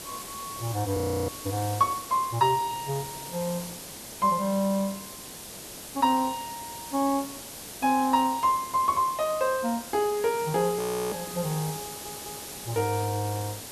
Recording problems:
background hiss; SNR 11 dB
frozen audio; at 1 s and at 11 s
stutter; at 12 s

